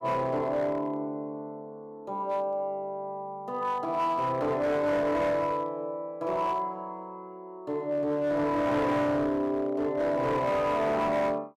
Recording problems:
distortion; hard clipping, signal-to-distortion ratio 11 dB

